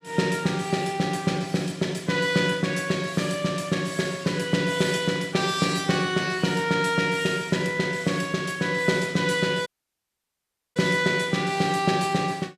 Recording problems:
audio cutting out; at 9.5 s for 1 s

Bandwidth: 14.5 kHz